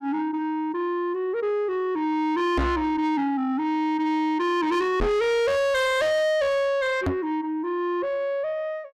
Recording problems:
distorted audio; soft clipping, signal-to-distortion ratio 7 dB
microphone thump; at 2.5 s, at 5 s and at 7 s; peak +4 dB vs average level

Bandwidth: 15 kHz